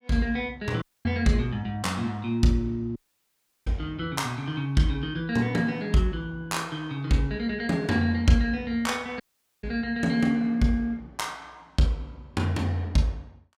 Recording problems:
dropout; at 1 s, at 3 s for 0.5 s and at 9 s

